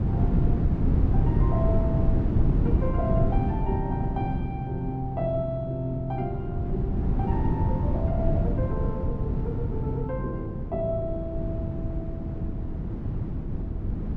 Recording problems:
wind noise; below 170 Hz, SNR -5 dB

